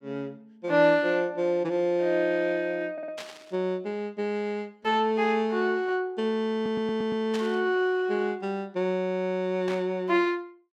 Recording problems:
audio stuttering; at 3 s and at 6.5 s
static burst; at 3 s, at 7.5 s and at 9.5 s; peak -7 dB vs average level

